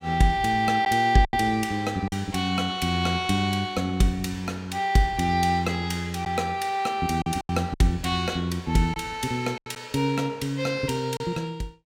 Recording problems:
lost packets; 4% of the sound replaced, filled with silence

